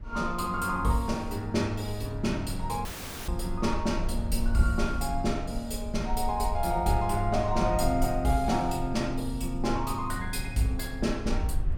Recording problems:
low-frequency rumble; below 56 Hz, SNR 8 dB
dropout; at 3 s

